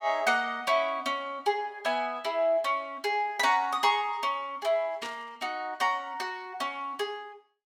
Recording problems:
static burst; at 5 s; peak -8 dB vs average level

